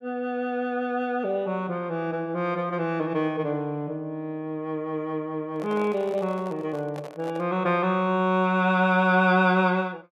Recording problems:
microphone handling noise; from 5.5 to 7.5 s; peak -10 dB vs average level

